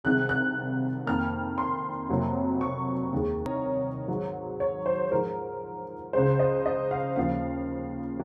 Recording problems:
edit click; at 3.5 s

